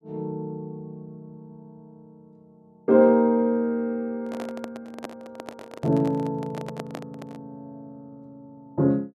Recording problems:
handling noise; from 4 to 7.5 s; peak -7 dB vs average level

